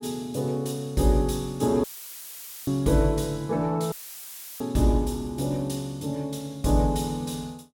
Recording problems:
dropout; at 2 s for 1 s and at 4 s for 0.5 s; filled with static

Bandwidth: 17 kHz